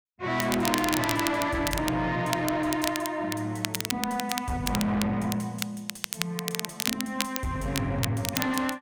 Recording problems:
distortion; soft clipping, signal-to-distortion ratio 7 dB
crackling; vinyl, SNR 4 dB

